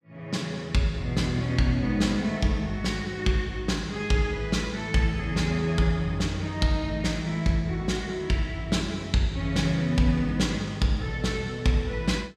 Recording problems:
none

